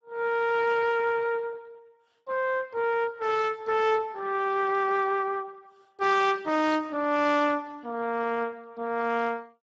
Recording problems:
lossy codec; Speex, log-spectral distance 3 dB

